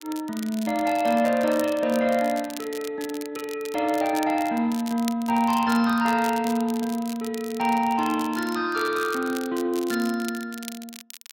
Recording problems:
lossy compression; Speex, log-spectral distance 3 dB
crackling; vinyl, SNR 16 dB

